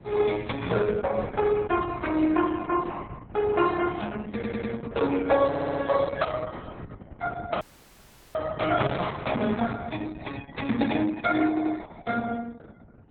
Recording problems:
lossy compression; MP3, then Opus, log-spectral distance 4 dB, nothing above 3.9 kHz
wind on the microphone; below 230 Hz, SNR 17 dB
stutter; at 4.5 s, at 5.5 s and at 11 s
dropout; at 7.5 s for 0.5 s

